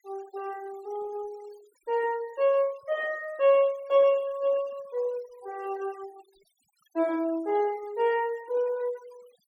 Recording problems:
noise reduction artefacts; signal-to-artefact ratio 24 dB

